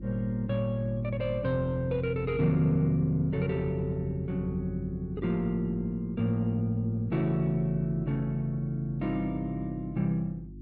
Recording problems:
electrical hum; 50 Hz, harmonics up to 350 Hz, SNR 14 dB

